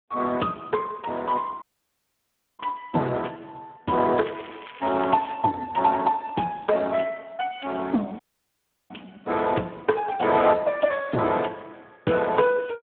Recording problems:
phone line; 150 Hz to 3 kHz, Speex
dropout; at 1.5 s for 1 s and at 8 s for 0.5 s
crackle; from 4 to 5.5 s; loose cable, SNR 18 dB

